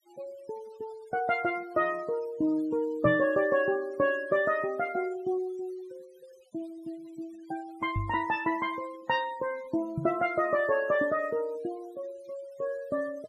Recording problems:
denoising artefacts; signal-to-artefact ratio 22 dB
microphone bump; at 3 s, at 8 s and at 10 s; peak +2 dB vs average level

